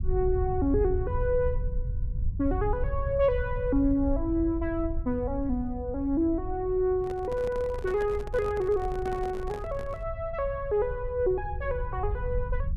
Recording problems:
low-frequency rumble; below 80 Hz, SNR 6 dB
microphone handling noise; from 7 to 10 s; peak -8 dB vs average level

